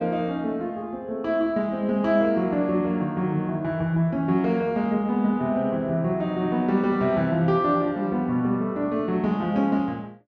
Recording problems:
none

